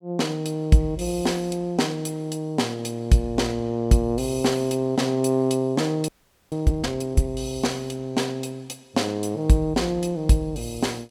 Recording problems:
frozen audio; at 6 s

